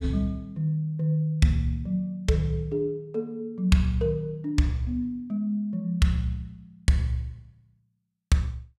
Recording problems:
none

